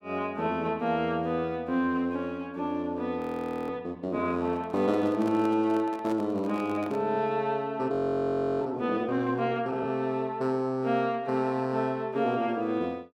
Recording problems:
audio freezing; at 3 s for 0.5 s and at 8 s for 0.5 s
handling noise; from 4.5 to 7 s; peak -7 dB vs average level

